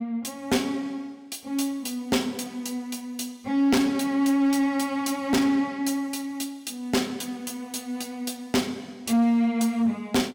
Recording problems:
distorted audio; hard clipping, signal-to-distortion ratio 11 dB

